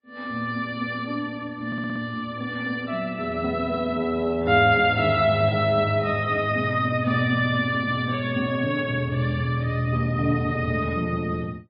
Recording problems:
codec artefacts; MP3, log-spectral distance 2 dB, nothing above 4.1 kHz
stutter; at 1.5 s

